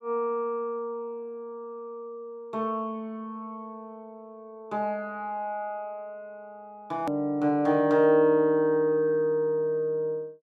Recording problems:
edit click; at 7 s

